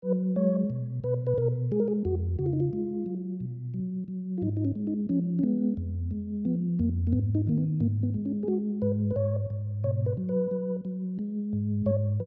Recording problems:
none

